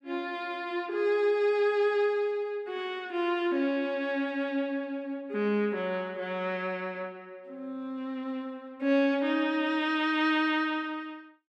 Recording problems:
none

